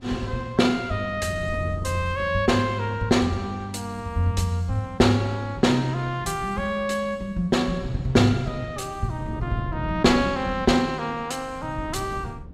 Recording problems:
wind noise; below 200 Hz, SNR 16 dB

